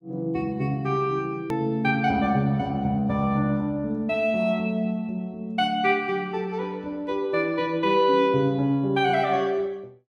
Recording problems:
hard cut with a click; at 1.5 s

